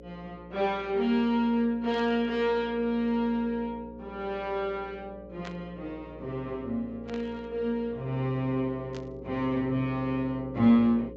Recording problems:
treble missing; nothing above 8 kHz
hum; 60 Hz, harmonics up to 540 Hz, SNR 17 dB
static burst; 4 times, first at 2 s; peak -10 dB vs average level

